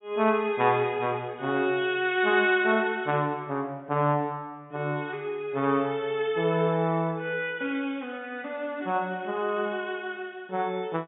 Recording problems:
low-pass filter; nothing above 4 kHz

